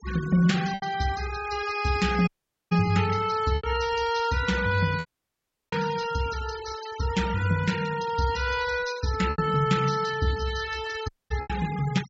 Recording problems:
treble missing; nothing above 7.6 kHz
denoising artefacts; signal-to-artefact ratio 14 dB
packet loss; 4% of the sound replaced, filled with repeated pitch periods
dropout; at 2.5 s, at 5 s for 0.5 s and at 11 s

